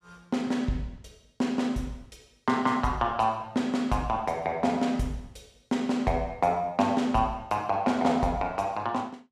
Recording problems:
none

